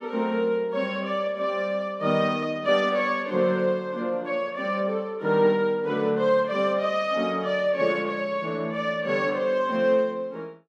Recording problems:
none

